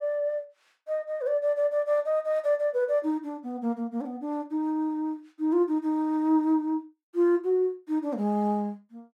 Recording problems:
none

